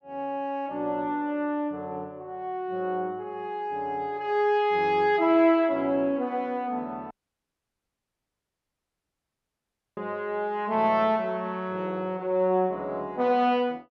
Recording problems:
audio cutting out; at 7 s for 3 s

